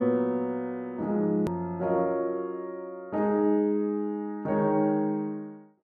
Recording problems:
click at an edit; at 1.5 s

